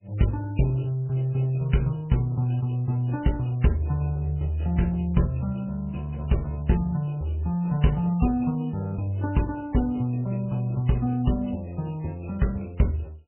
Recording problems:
codec artefacts; AAC, then MP3, log-spectral distance 4 dB, nothing above 3 kHz

